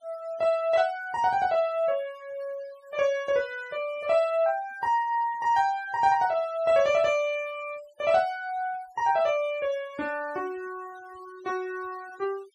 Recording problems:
denoising artefacts; signal-to-artefact ratio 23 dB

